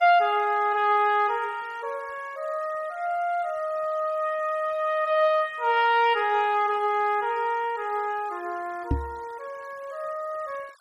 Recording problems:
noise reduction artefacts; signal-to-artefact ratio 26 dB
knock on the microphone; at 9 s; peak +3 dB vs average level

